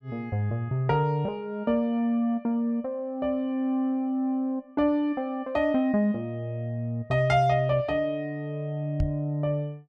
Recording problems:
knock on the microphone; at 9 s; peak +3 dB vs average level

